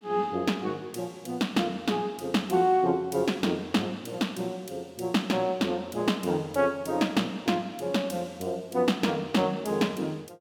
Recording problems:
none

